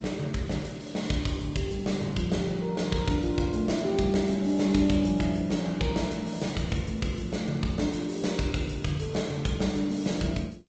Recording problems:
lossy compression; Opus, then G.722, log-spectral distance 4 dB, nothing above 7.8 kHz

